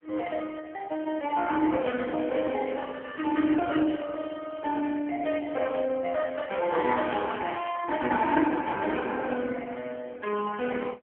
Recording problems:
telephone audio; 220 Hz to 3.3 kHz, AMR-NB

